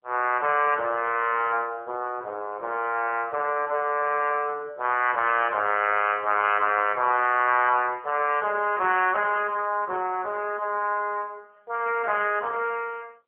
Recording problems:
phone line; 320 Hz to 3.1 kHz, AMR-NB

